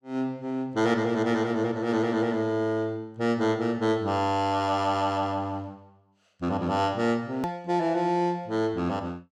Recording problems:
hard cut with a click; at 7.5 s

